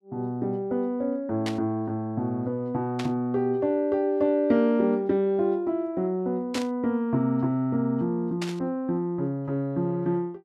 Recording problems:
static burst; 4 times, first at 1.5 s; peak -3 dB vs average level

